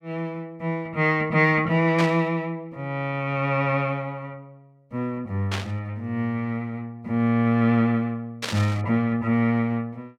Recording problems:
static burst; at 2 s, at 5.5 s and at 8.5 s; peak 0 dB vs average level

